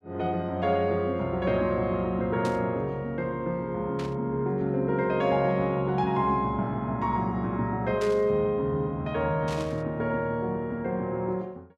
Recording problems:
static burst; 4 times, first at 2.5 s; peak -8 dB vs average level

